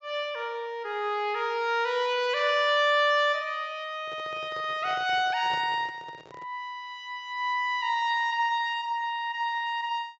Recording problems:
low-pass filter; nothing above 8 kHz
handling noise; from 4 to 6.5 s; peak -12 dB vs average level

